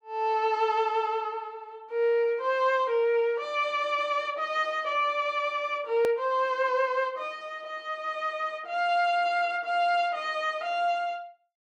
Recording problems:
click at an edit; at 6 s

